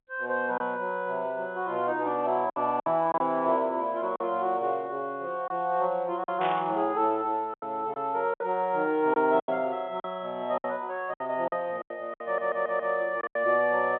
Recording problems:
telephone audio; 220 Hz to 3.6 kHz, G.711
lost packets; 7% of the sound replaced, filled with silence
static burst; at 6.5 s; peak -4 dB vs average level
stutter; at 12 s

